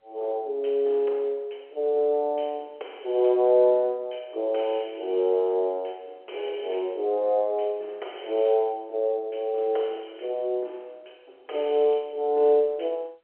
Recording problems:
telephone audio; 320 Hz to 3.3 kHz, G.711

